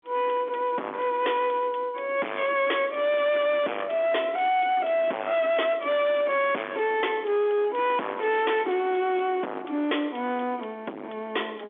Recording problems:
phone line; 260 Hz to 3.5 kHz, G.711
distorted audio; hard clipping, signal-to-distortion ratio 3 dB

